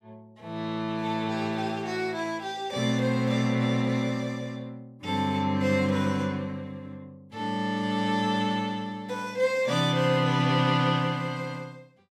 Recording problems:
none

